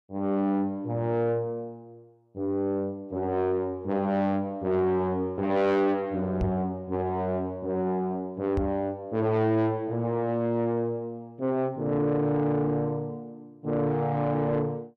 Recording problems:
distortion; soft clipping, signal-to-distortion ratio 11 dB
microphone bump; at 6.5 s and at 8.5 s; peak +3 dB vs average level

